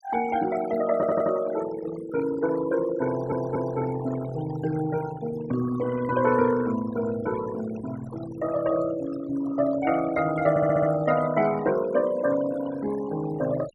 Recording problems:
denoising artefacts; signal-to-artefact ratio 12 dB
stutter; at 1 s, at 3 s and at 11 s

